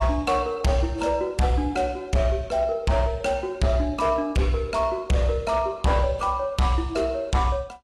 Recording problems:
codec artefacts; AAC, log-spectral distance 2 dB
distorted audio; hard clipping, signal-to-distortion ratio 11 dB

